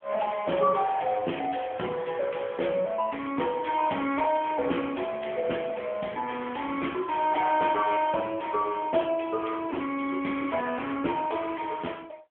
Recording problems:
phone line; 220 Hz to 3.3 kHz, AMR-NB

